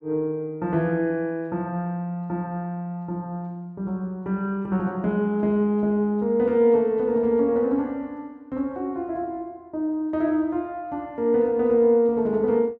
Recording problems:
none

